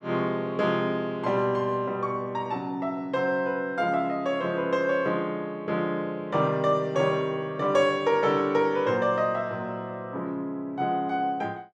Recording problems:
none

